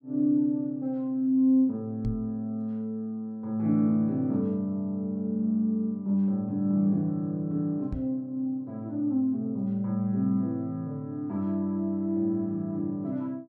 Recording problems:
knock on the microphone; at 2 s and at 8 s; peak -1 dB vs average level

